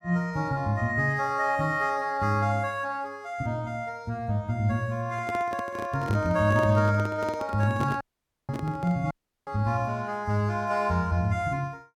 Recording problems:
microphone handling noise; from 5 to 9 s; peak -3 dB vs average level
dropout; at 8 s and at 9 s

